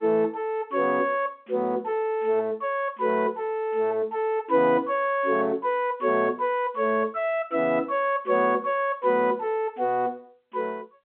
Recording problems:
telephone audio; 300 Hz to 3.9 kHz, G.711

